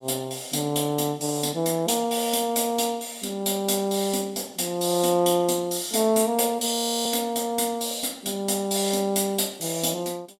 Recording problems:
audio freezing; at 7 s

